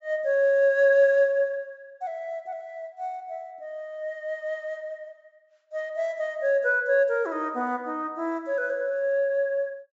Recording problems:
low-pass filter; nothing above 8 kHz

